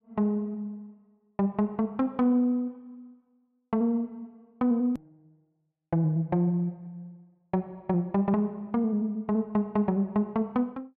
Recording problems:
edit click; at 5 s

